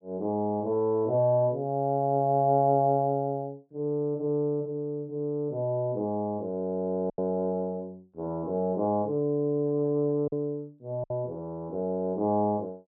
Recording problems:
packet loss; 1.5% of the sound replaced, filled with silence

